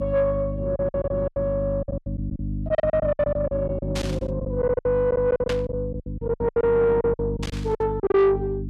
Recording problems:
distortion; soft clipping, signal-to-distortion ratio 11 dB
hum; 50 Hz, harmonics up to 550 Hz, SNR 7 dB
lost packets; 18% of the sound replaced, filled with silence
static burst; at 4 s, at 5.5 s and at 7.5 s; peak -3 dB vs average level

